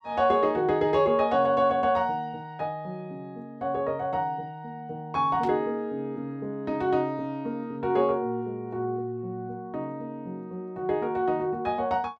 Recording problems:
burst of static; at 5.5 s; peak -13 dB vs average level

